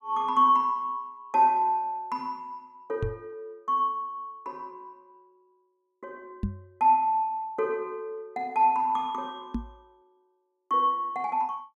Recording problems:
microphone thump; at 3 s, at 6.5 s and at 9.5 s; peak 0 dB vs average level

